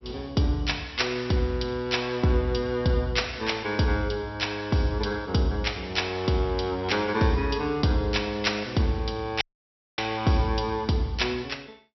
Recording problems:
treble cut off; nothing above 5.7 kHz
audio cutting out; at 9.5 s for 0.5 s

